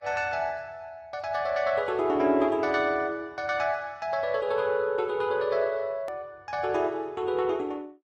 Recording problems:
lossy compression; Vorbis, log-spectral distance 2 dB, nothing above 13.1 kHz
edit click; at 6 s

